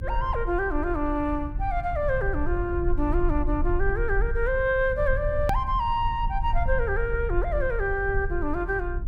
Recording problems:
low-frequency rumble; below 58 Hz, SNR 5 dB
hard cut with a click; at 5.5 s

